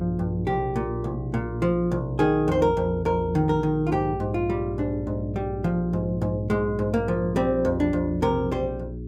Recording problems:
mains hum; 60 Hz, harmonics up to 420 Hz, SNR 10 dB

